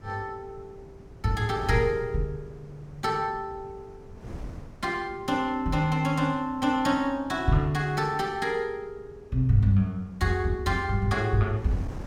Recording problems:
wind on the microphone; below 270 Hz, SNR 19 dB

